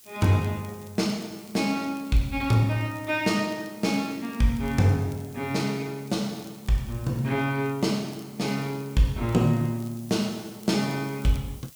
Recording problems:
hiss; SNR 23 dB
crackling; vinyl, SNR 29 dB

